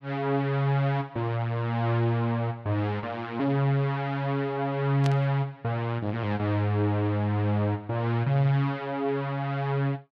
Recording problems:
static burst; at 5 s; peak -5 dB vs average level

